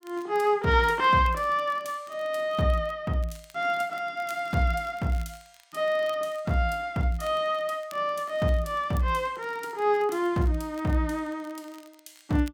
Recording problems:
crackling; vinyl, SNR 28 dB

